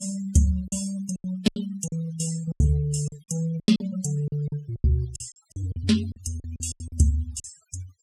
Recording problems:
noise reduction artefacts; signal-to-artefact ratio 16 dB
lost packets; 14% of the sound replaced, filled with silence

